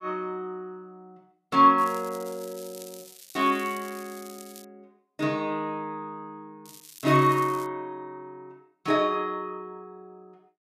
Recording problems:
crackle; from 2 to 4.5 s and from 6.5 to 7.5 s; loose cable, SNR 20 dB

